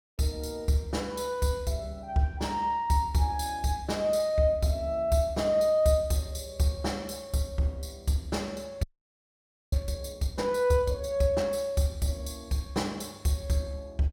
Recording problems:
audio freezing; at 9 s for 1 s

